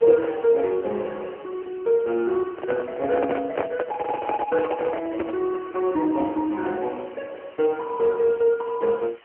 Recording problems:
telephone audio; 260 Hz to 3.3 kHz, AMR-NB
hiss; SNR 27 dB
microphone handling noise; from 2.5 to 5.5 s; peak +2 dB vs average level

